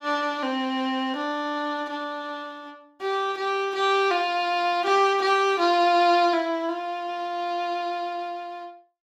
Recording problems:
none

